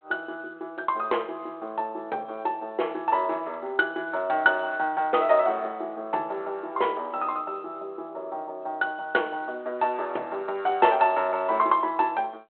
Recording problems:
telephone audio; 340 Hz to 3.3 kHz, G.726

